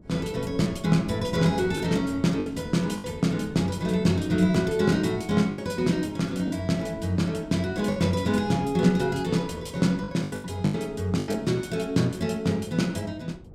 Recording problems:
wind noise; below 260 Hz, SNR 19 dB
lost packets; 5% of the sound replaced, filled with the last packet

